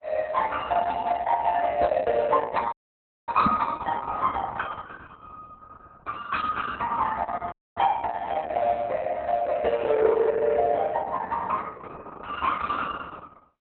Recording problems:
lossy compression; AAC, then Opus, log-spectral distance 4 dB, nothing above 4.1 kHz
dropout; at 2.5 s for 0.5 s and at 7.5 s
knock on the microphone; at 3.5 s; peak +4 dB vs average level

